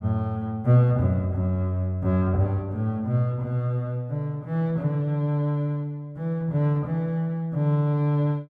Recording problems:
none

